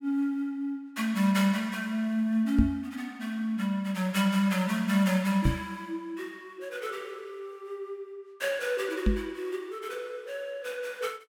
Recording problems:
microphone bump; at 2.5 s, at 5.5 s and at 9 s; peak +9 dB vs average level

